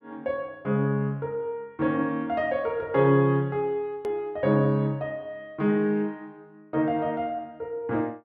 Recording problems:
edit click; at 4 s

